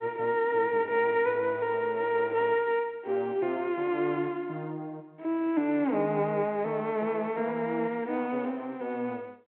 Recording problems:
telephone audio; 190 Hz to 3.3 kHz, G.726

